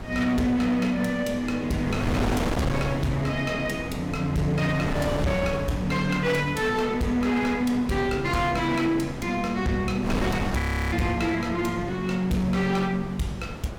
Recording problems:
distorted audio; hard clipping, signal-to-distortion ratio 10 dB
wind noise; below 720 Hz, SNR 8 dB
frozen audio; at 11 s

